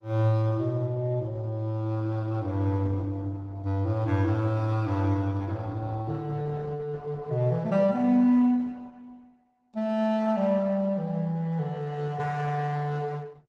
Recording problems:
lossy compression; Opus, log-spectral distance 2 dB

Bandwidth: 15 kHz